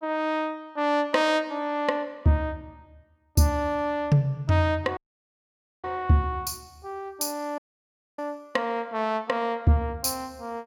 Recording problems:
audio cutting out; at 5 s for 1 s and at 7.5 s for 0.5 s

